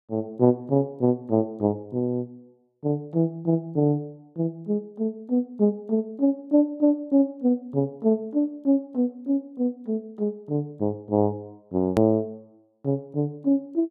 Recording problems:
hard cut with a click; at 12 s

